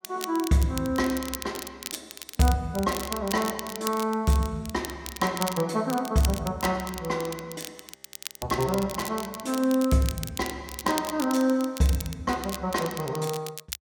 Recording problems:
crackle; vinyl, SNR 11 dB
frozen audio; at 8 s

